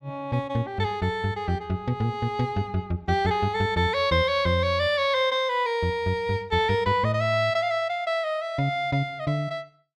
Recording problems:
none

